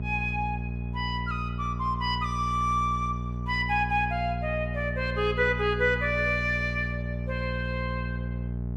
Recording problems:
hum; 60 Hz, harmonics up to 660 Hz, SNR 5 dB

